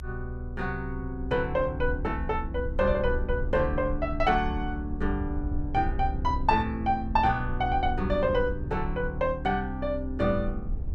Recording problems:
rumble; below 68 Hz, strongest tone 26 Hz, SNR 7 dB

